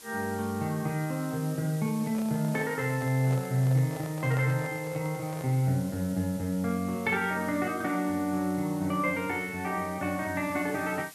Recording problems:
hiss; slope 0 dB per octave, SNR 17 dB
handling noise; from 2 to 5.5 s; peak -9 dB vs average level

